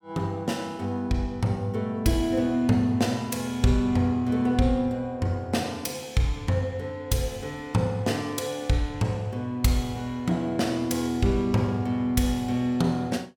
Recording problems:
none

